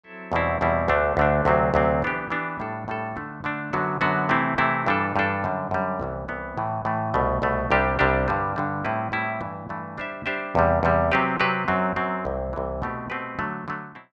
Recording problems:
none

